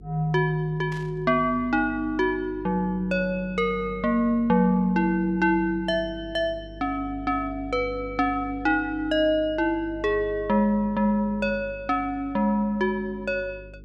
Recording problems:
mains hum; 50 Hz, harmonics up to 450 Hz, SNR 18 dB
static burst; at 1 s; peak -15 dB vs average level

